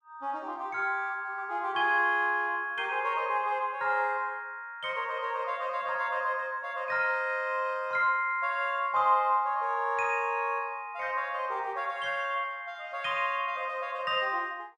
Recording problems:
none

